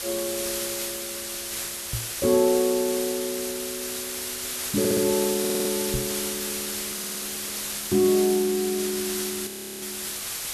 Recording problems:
background hiss; slope +1 dB per octave, SNR 3 dB
microphone thump; at 2 s and at 6 s; peak -1 dB vs average level
stutter; at 5 s, at 5.5 s and at 7 s
crackling; from 6 to 8.5 s; loose cable, SNR 26 dB
frozen audio; at 9.5 s

